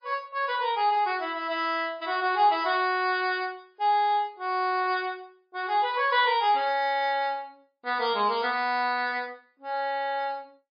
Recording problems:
lossy compression; MP3, log-spectral distance 4 dB

